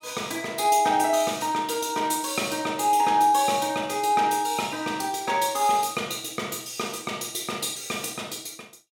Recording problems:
none

